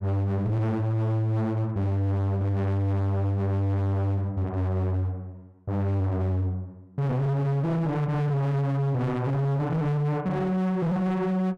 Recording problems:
distortion; hard clipping, signal-to-distortion ratio 6 dB

